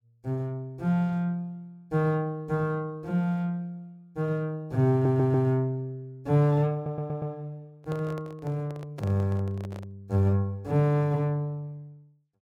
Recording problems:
stutter; at 5 s and at 6.5 s
microphone handling noise; from 8 to 10 s; peak -9 dB vs average level

